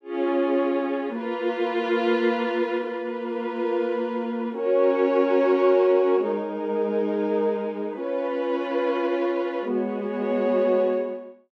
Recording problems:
none

